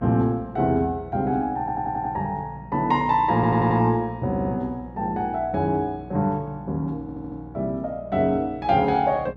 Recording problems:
hum; 60 Hz, harmonics up to 900 Hz, SNR 19 dB
stutter; 4 times, first at 1.5 s

